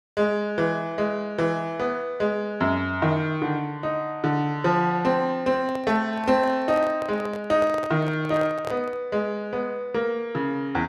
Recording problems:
handling noise; from 5.5 to 9 s; peak -4 dB vs average level

